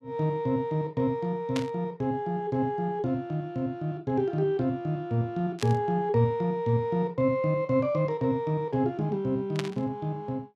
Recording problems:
burst of static; at 1.5 s, at 5.5 s and at 9.5 s; peak -1 dB vs average level

